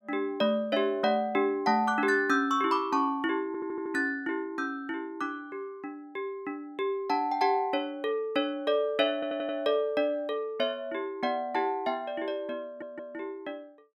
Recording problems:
stutter; at 3.5 s, at 9 s and at 13 s

